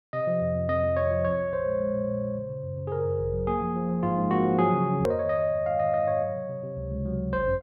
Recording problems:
edit click; at 5 s

